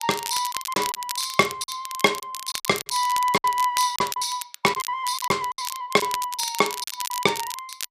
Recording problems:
crackle; vinyl, SNR 9 dB
packet loss; 11% of the sound replaced, filled with silence

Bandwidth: 14.5 kHz